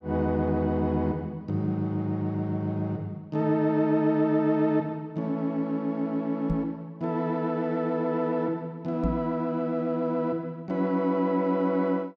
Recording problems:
knock on the microphone; at 6.5 s and at 9 s; peak +2 dB vs average level

